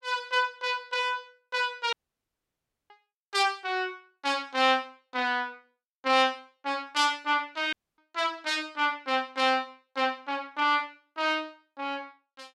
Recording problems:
audio cutting out; at 2 s for 1 s and at 7.5 s

